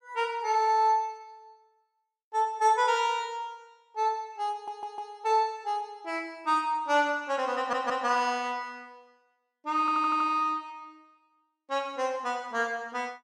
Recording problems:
stutter; at 4.5 s, at 7.5 s and at 10 s

